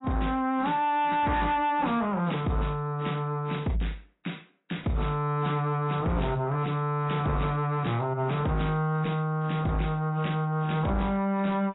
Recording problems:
lossy compression; AAC, log-spectral distance 3 dB, nothing above 3.9 kHz
distorted audio; soft clipping, signal-to-distortion ratio 10 dB

